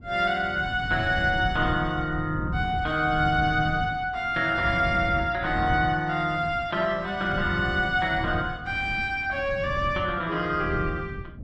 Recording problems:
wind noise; below 180 Hz, SNR 10 dB

